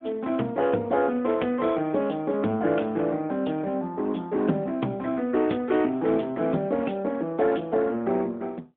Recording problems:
telephone audio; 130 Hz to 3.5 kHz, AMR-NB, then MP3

